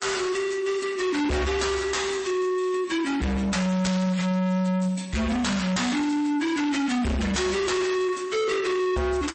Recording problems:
codec artefacts; MP3, log-spectral distance 4 dB, nothing above 8.2 kHz
distorted audio; soft clipping, signal-to-distortion ratio 6 dB

